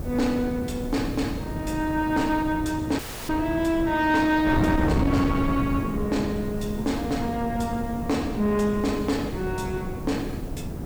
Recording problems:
distortion; soft clipping, signal-to-distortion ratio 12 dB
background hiss; SNR 24 dB
wind noise; below 310 Hz, SNR 5 dB
dropout; at 3 s

